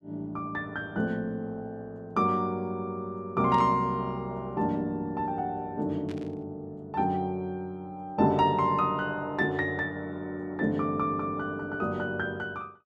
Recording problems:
burst of static; at 3.5 s and at 6 s; peak -12 dB vs average level

